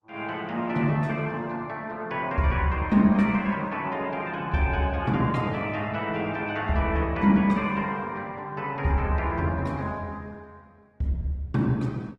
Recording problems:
lossy codec; Opus, log-spectral distance 2 dB, nothing above 13.7 kHz

